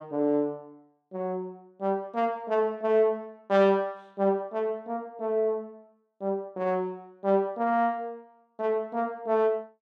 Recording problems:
none

